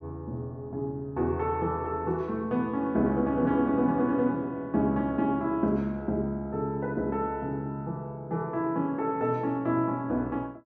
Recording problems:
none

